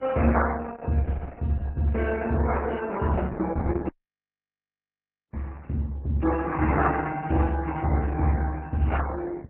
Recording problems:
codec artefacts; MP3, then Opus, log-spectral distance 3 dB
hum; 50 Hz, harmonics up to 550 Hz, SNR 26 dB
audio cutting out; at 4 s for 1.5 s

